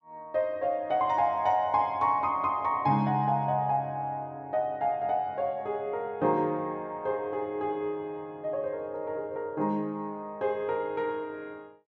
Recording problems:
none

